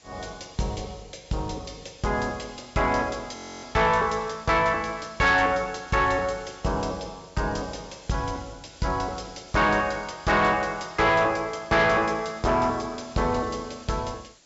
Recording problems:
low-pass filter; nothing above 8 kHz
distorted audio; soft clipping, signal-to-distortion ratio 10 dB
background hiss; SNR 27 dB
frozen audio; at 3.5 s

